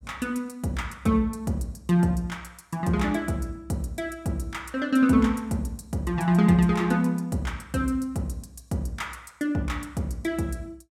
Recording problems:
none

